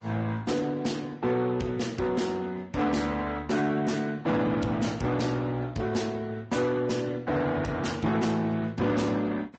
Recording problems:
lossy compression; Speex, then Vorbis, log-spectral distance 4 dB, nothing above 7.6 kHz
distortion; soft clipping, signal-to-distortion ratio 11 dB

